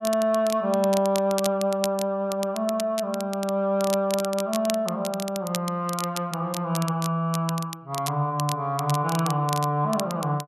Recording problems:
crackling; vinyl, SNR 11 dB

